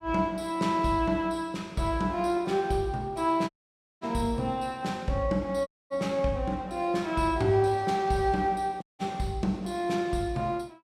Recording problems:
dropout; at 3.5 s for 0.5 s, at 5.5 s and at 9 s

